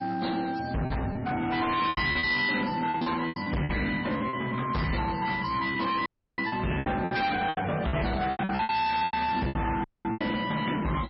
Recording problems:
lossy compression; MP3, log-spectral distance 4 dB, nothing above 5.3 kHz
distortion; hard clipping, signal-to-distortion ratio 6 dB
lost packets; 13% of the sound replaced, filled with repeated pitch periods
audio cutting out; at 6 s and at 10 s

